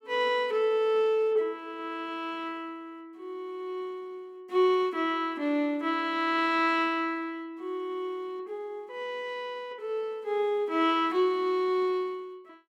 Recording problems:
none

